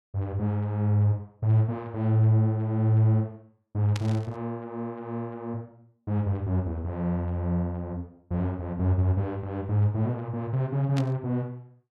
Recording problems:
static burst; at 4 s and at 11 s; peak -5 dB vs average level

